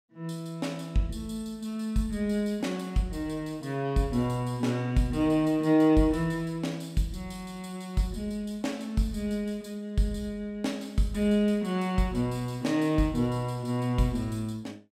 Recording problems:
none

